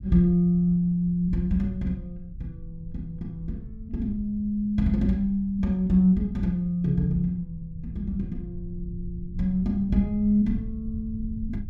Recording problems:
low-frequency rumble; below 92 Hz, SNR 15 dB

